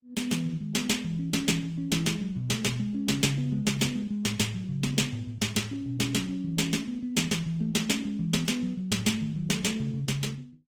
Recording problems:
lossy compression; AAC, then Opus, log-spectral distance 3 dB, nothing above 19 kHz

